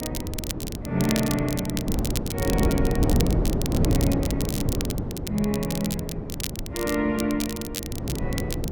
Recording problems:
wind noise; below 300 Hz, SNR -1 dB
crackling; vinyl, SNR 6 dB

